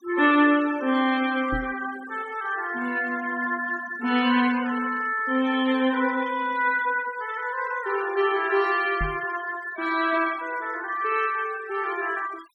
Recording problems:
denoising artefacts; signal-to-artefact ratio 17 dB
microphone thump; at 1.5 s and at 9 s; peak -3 dB vs average level

